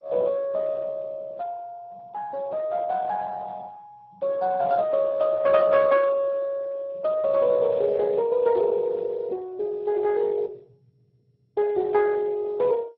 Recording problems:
lossy compression; Speex, then MP2, log-spectral distance 3 dB

